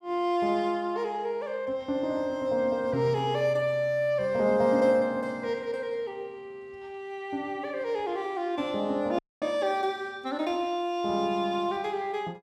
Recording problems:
dropout; at 9 s

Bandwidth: 15 kHz